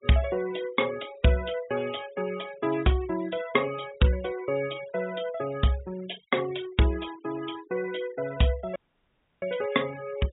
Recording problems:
treble cut off; nothing above 4 kHz
noise reduction artefacts; signal-to-artefact ratio 17 dB
dropout; at 9 s for 0.5 s

